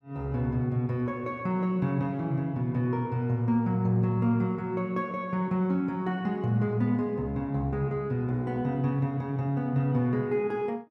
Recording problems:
none

